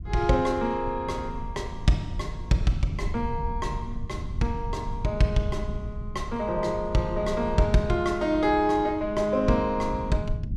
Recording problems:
low-frequency rumble; below 110 Hz, SNR 10 dB

